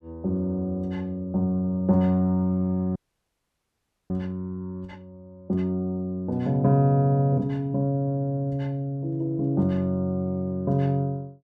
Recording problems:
frozen audio; at 3 s for 1 s

